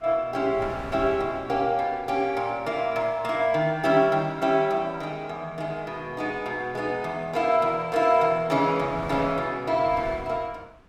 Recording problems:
wind noise; below 1.1 kHz, SNR 20 dB

